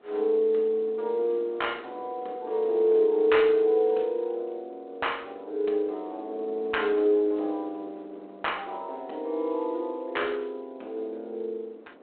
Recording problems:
phone line; 260 Hz to 3.3 kHz, G.726
wind noise; below 600 Hz, SNR 22 dB

